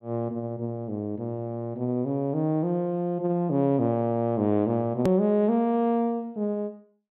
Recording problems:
low-pass filter; nothing above 4 kHz
edit click; at 5 s

